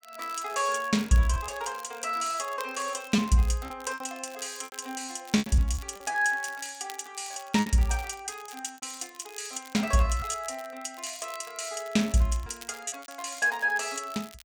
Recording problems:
crackle; vinyl, SNR 19 dB
lost packets; 7% of the sound replaced, filled with repeated pitch periods

